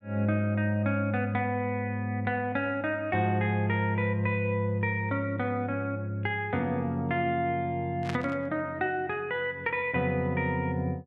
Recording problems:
static burst; at 8 s; peak -4 dB vs average level

